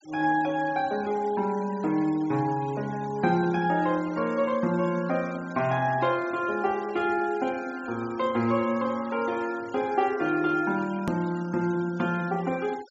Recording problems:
low-pass filter; nothing above 8 kHz
noise reduction artefacts; signal-to-artefact ratio 20 dB
click at an edit; at 11 s

